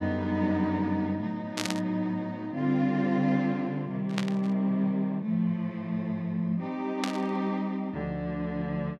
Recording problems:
burst of static; at 1.5 s, at 4 s and at 7 s; peak +2 dB vs average level

